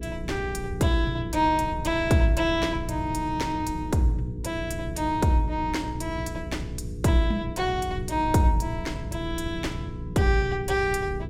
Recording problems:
electrical hum; 60 Hz, harmonics up to 480 Hz, SNR 11 dB
low-frequency rumble; below 130 Hz, SNR 11 dB

